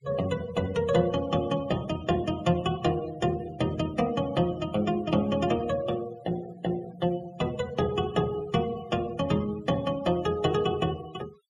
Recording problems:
noise reduction artefacts; signal-to-artefact ratio 20 dB

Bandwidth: 14.5 kHz